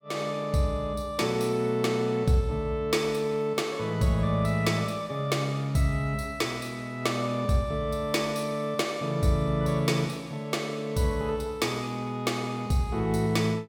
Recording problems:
none

